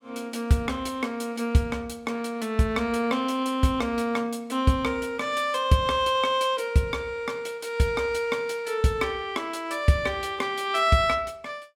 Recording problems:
none

